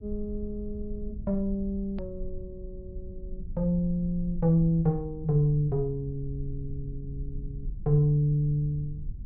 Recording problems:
treble cut off; nothing above 5 kHz
rumble; below 60 Hz, SNR 13 dB
hard cut with a click; at 2 s

